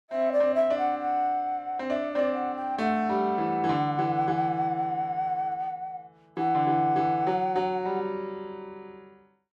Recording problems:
none

